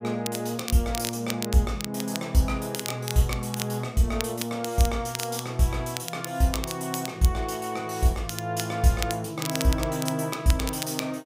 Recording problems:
crackling; vinyl, SNR 9 dB

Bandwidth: 15.5 kHz